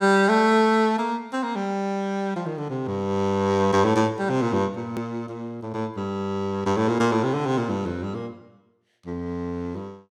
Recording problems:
hard cut with a click; at 5 s

